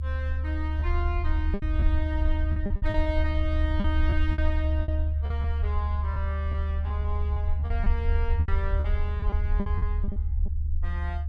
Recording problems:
low-frequency rumble; below 76 Hz, SNR -8 dB
packet loss; 10% of the sound replaced, filled with repeated pitch periods

